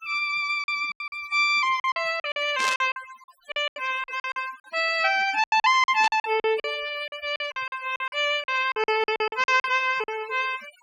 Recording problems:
denoising artefacts; signal-to-artefact ratio 16 dB
lost packets; 16% of the sound replaced, filled with silence
burst of static; at 2.5 s and at 6 s; peak -1 dB vs average level

